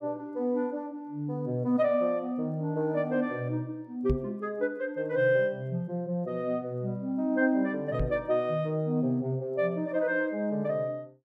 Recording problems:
microphone bump; at 4 s and at 8 s; peak +3 dB vs average level

